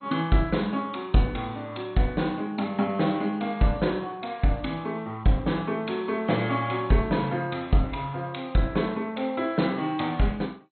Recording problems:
codec artefacts; MP2, log-spectral distance 4 dB, nothing above 4.2 kHz

